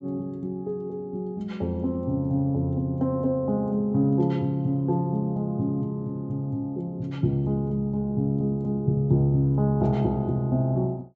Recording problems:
treble cut off; nothing above 8 kHz

